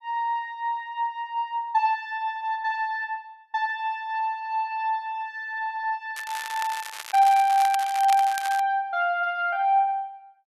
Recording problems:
crackling; from 6 to 8.5 s; loose cable, SNR 12 dB

